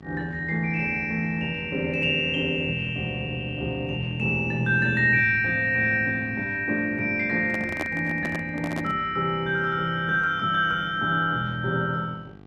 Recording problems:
lossy compression; Opus, log-spectral distance 2 dB, nothing above 10.7 kHz
hum; 50 Hz, harmonics up to 2.4 kHz, SNR 23 dB
handling noise; from 7.5 to 9 s; peak -2 dB vs average level

